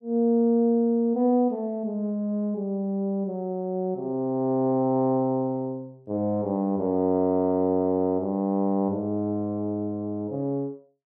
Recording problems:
none

